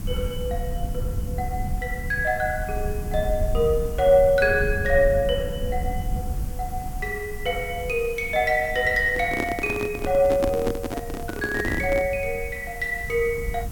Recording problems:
hiss; SNR 20 dB
rumble; below 94 Hz, SNR 9 dB
handling noise; from 9 to 12 s; peak +2 dB vs average level

